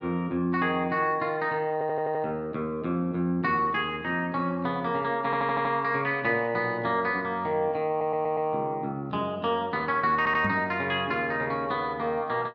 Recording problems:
audio stuttering; 4 times, first at 1.5 s
knock on the microphone; at 10 s; peak -1 dB vs average level

